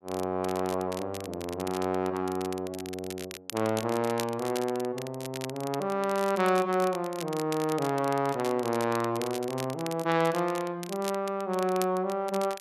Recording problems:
crackle; vinyl, SNR 13 dB

